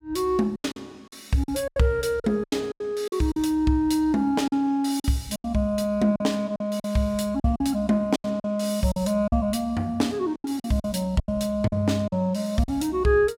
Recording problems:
lost packets; 11% of the sound replaced, filled with silence

